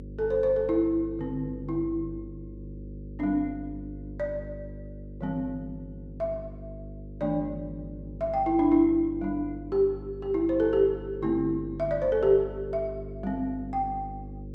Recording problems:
mains hum; 50 Hz, harmonics up to 550 Hz, SNR 13 dB

